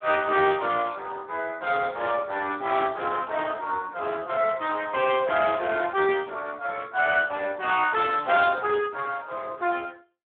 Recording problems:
telephone audio; 280 Hz to 3.5 kHz, Speex

